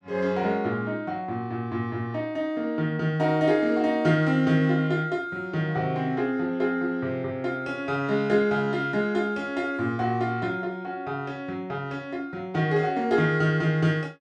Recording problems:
none

